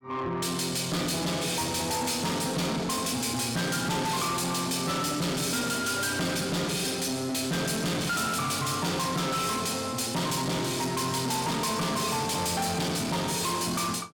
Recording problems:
distortion; soft clipping, signal-to-distortion ratio 7 dB

